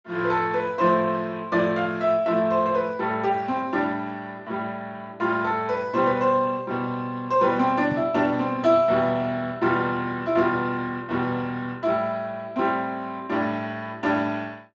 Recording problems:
codec artefacts; Speex, log-spectral distance 3 dB
knock on the microphone; at 8 s; peak -5 dB vs average level

